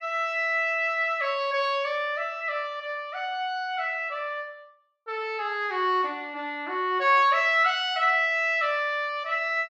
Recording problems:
none

